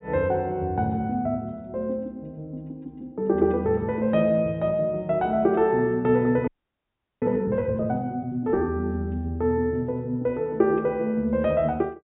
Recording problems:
treble missing; nothing above 4 kHz
audio freezing; at 6.5 s for 0.5 s

